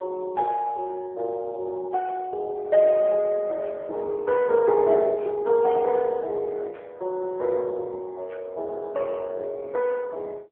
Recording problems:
telephone audio; 320 Hz to 3 kHz, AMR-NB

